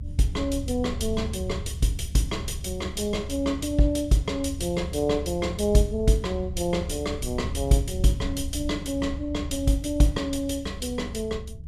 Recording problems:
rumble; below 92 Hz, SNR 8 dB

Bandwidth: 14.5 kHz